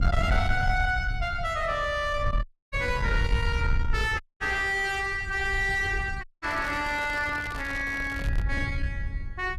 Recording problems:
distorted audio; soft clipping, signal-to-distortion ratio 9 dB
wind noise; below 90 Hz, SNR 4 dB
dropout; at 2.5 s, at 4 s and at 6 s
crackling; from 6.5 to 8.5 s; loose cable, SNR 16 dB

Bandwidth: 14.5 kHz